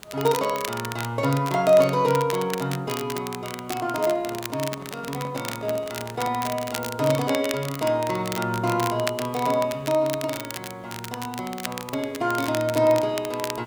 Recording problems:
hiss; slope -5 dB per octave, SNR 27 dB
crackling; vinyl, SNR 11 dB
microphone handling noise; from 4 to 6.5 s; peak -10 dB vs average level

